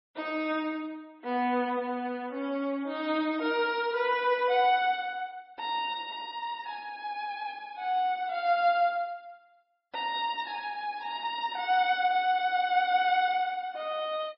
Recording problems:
codec artefacts; MP3, log-spectral distance 2 dB, nothing above 5.2 kHz

